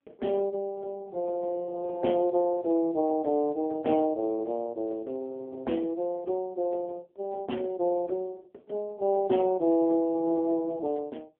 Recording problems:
phone line; 240 Hz to 3.5 kHz, AMR-NB

